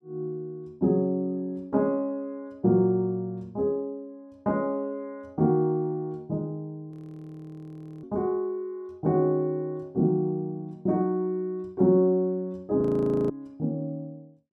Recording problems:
audio freezing; at 7 s for 1 s and at 13 s

